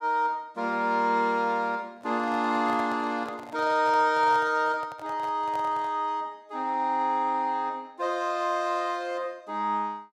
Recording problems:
handling noise; from 2 to 6 s; peak -9 dB vs average level

